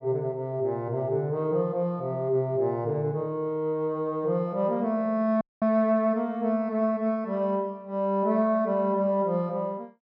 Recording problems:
dropout; at 5.5 s

